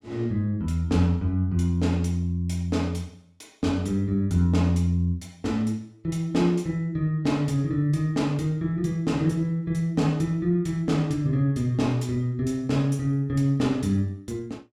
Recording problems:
none

